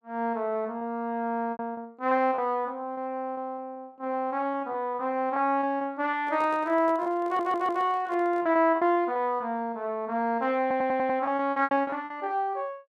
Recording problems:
lost packets; 10% of the sound replaced, filled with repeated pitch periods
microphone handling noise; from 6 to 8.5 s; peak -11 dB vs average level
audio stuttering; at 7.5 s and at 11 s

